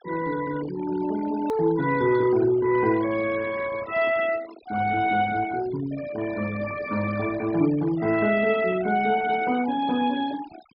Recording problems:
treble cut off; nothing above 5.5 kHz
denoising artefacts; signal-to-artefact ratio 17 dB
hard cut with a click; at 1.5 s

